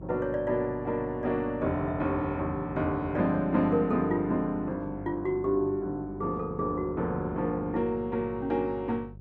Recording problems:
hum; 50 Hz, harmonics up to 550 Hz, SNR 17 dB

